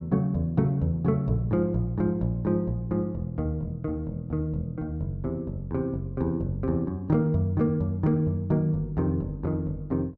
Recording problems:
none

